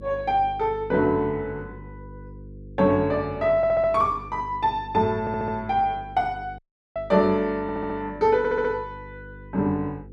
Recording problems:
hum; 50 Hz, harmonics up to 500 Hz, SNR 19 dB
stutter; 4 times, first at 3.5 s
dropout; at 6.5 s

